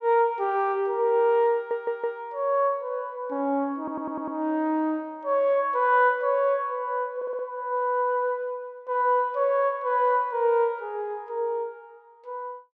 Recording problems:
audio stuttering; at 1.5 s, at 4 s and at 7 s

